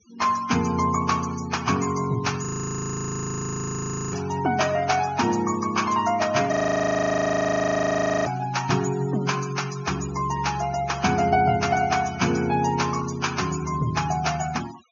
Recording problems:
treble cut off; nothing above 6.8 kHz
noise reduction artefacts; signal-to-artefact ratio 16 dB
audio freezing; at 2.5 s for 1.5 s and at 6.5 s for 1.5 s

